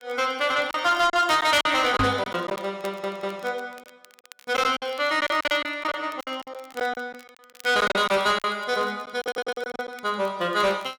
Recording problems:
distortion; soft clipping, signal-to-distortion ratio 11 dB
crackling; vinyl, SNR 26 dB
packet loss; 10% of the sound replaced, filled with silence
microphone bump; at 2 s; peak +3 dB vs average level
stutter; at 2.5 s and at 9 s

